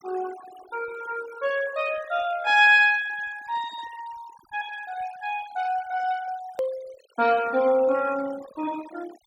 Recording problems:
denoising artefacts; signal-to-artefact ratio 20 dB
edit click; at 6.5 s

